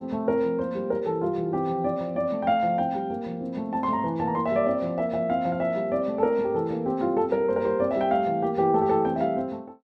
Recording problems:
none

